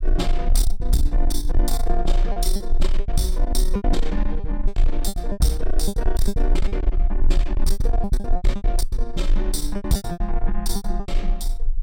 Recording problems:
distortion; soft clipping, signal-to-distortion ratio 10 dB
rumble; below 34 Hz, strongest tone 20 Hz, SNR -2 dB
packet loss; 14% of the sound replaced, filled with repeated pitch periods

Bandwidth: 16.5 kHz